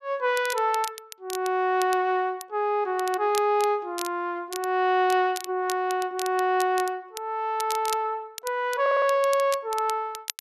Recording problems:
crackling; vinyl, SNR 14 dB
stutter; at 9 s

